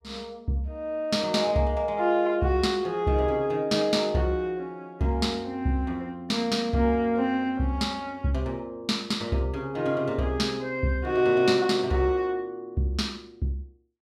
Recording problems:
none

